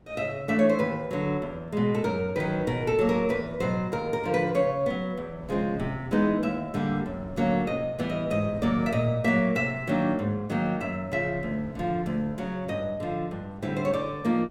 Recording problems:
wind on the microphone; below 320 Hz, SNR 20 dB

